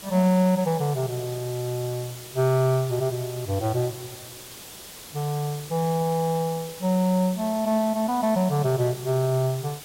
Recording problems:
hiss; slope -1 dB per octave, SNR 15 dB

